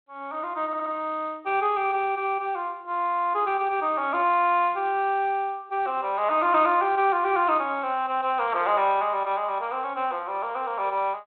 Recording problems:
telephone audio; 300 Hz to 3.5 kHz, G.726
audio stuttering; at 0.5 s

